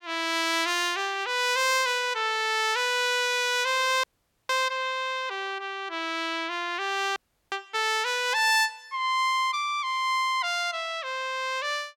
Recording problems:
dropout; at 4 s and at 7 s

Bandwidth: 17 kHz